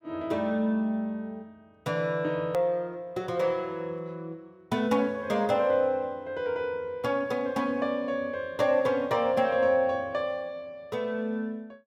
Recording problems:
click at an edit; at 2.5 s

